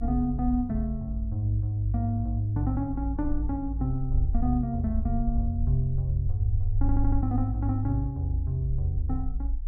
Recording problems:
low-frequency rumble; below 56 Hz, SNR 4 dB
audio stuttering; at 7 s

